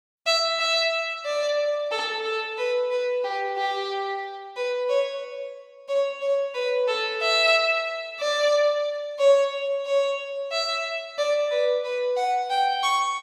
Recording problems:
none

